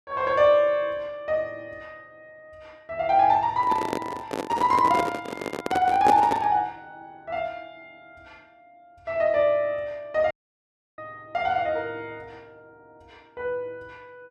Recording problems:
handling noise; from 3.5 to 6.5 s; peak +3 dB vs average level
dropout; at 10 s for 0.5 s

